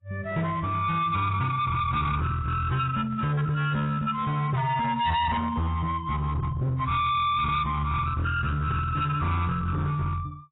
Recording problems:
codec artefacts; AAC, log-spectral distance 2 dB, nothing above 3.8 kHz
distortion; hard clipping, signal-to-distortion ratio 7 dB

